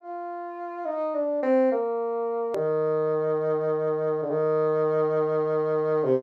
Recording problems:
click at an edit; at 2.5 s

